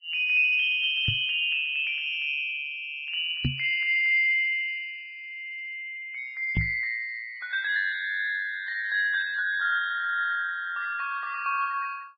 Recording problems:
lossy codec; Vorbis, log-spectral distance 2 dB
microphone thump; at 1 s, at 3.5 s and at 6.5 s; peak +3 dB vs average level

